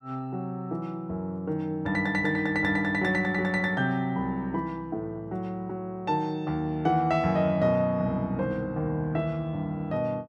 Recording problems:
none

